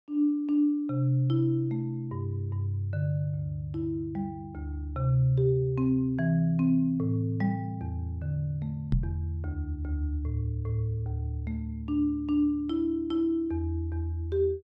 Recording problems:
microphone thump; at 9 s; peak +6 dB vs average level

